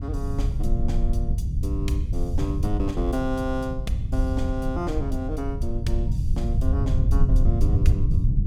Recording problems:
rumble; below 94 Hz, SNR -5 dB

